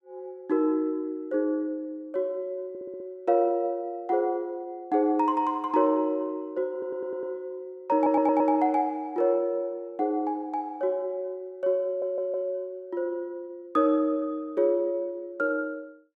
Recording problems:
stutter; 4 times, first at 2.5 s

